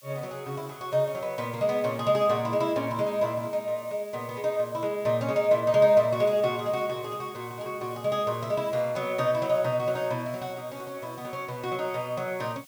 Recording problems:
background hiss; slope +4 dB per octave, SNR 23 dB

